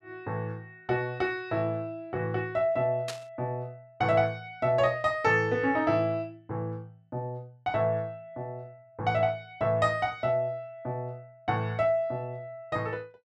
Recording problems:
static burst; at 3 s; peak -3 dB vs average level

